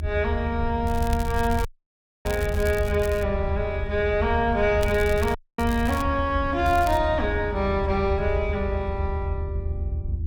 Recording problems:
hum; 50 Hz, harmonics up to 350 Hz, SNR 19 dB
rumble; below 80 Hz, SNR 5 dB
crackle; from 1 to 3 s, from 5 to 6 s and at 6.5 s; loose cable, SNR 16 dB
audio cutting out; at 1.5 s for 0.5 s and at 5.5 s

